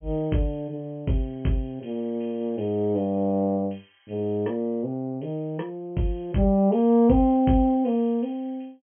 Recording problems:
treble missing; nothing above 3.2 kHz

